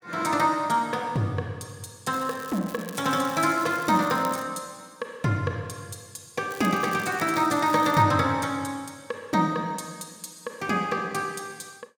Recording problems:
crackle; from 2 to 4.5 s and from 6.5 to 8 s; loose cable, SNR 17 dB

